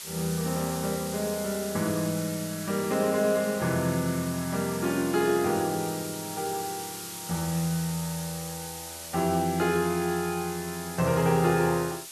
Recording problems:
background hiss; slope +3 dB per octave, SNR 9 dB

